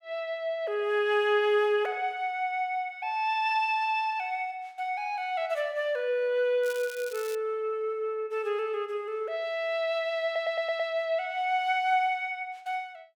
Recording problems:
crackle; at 6.5 s; loose cable, SNR 16 dB
audio stuttering; at 10 s

